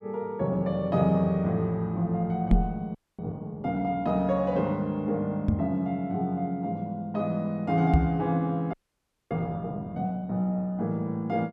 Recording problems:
knock on the microphone; at 2.5 s, at 5.5 s and at 8 s; peak +9 dB vs average level
frozen audio; at 3 s and at 8.5 s for 0.5 s

